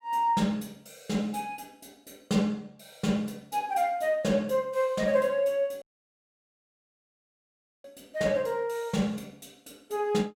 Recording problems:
audio cutting out; at 6 s for 2 s

